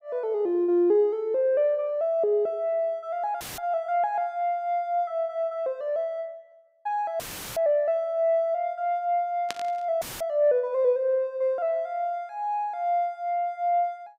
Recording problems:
dropout; at 3.5 s, at 7 s and at 10 s; filled with static
burst of static; at 9.5 s; peak -2 dB vs average level

